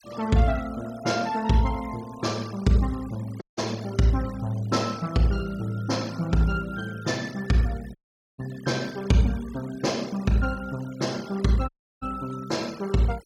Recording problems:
noise reduction artefacts; signal-to-artefact ratio 20 dB
dropout; at 3.5 s, at 8 s and at 12 s

